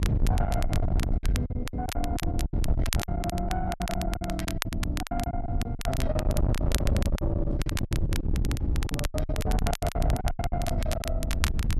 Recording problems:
distortion; soft clipping, signal-to-distortion ratio 7 dB
rumble; below 130 Hz, SNR 6 dB
wind on the microphone; below 120 Hz, SNR -3 dB
crackle; vinyl, SNR 5 dB
packet loss; 19% of the sound replaced, filled with silence

